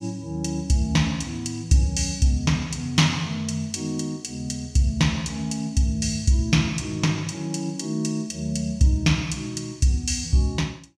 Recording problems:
none

